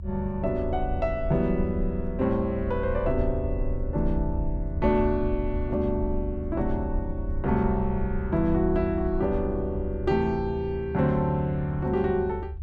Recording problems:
low-frequency rumble; below 76 Hz, SNR 7 dB

